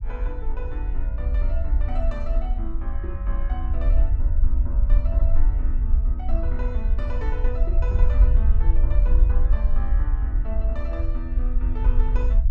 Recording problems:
rumble; below 54 Hz, SNR -13 dB

